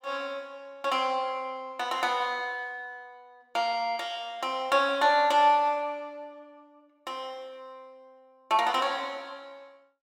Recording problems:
none

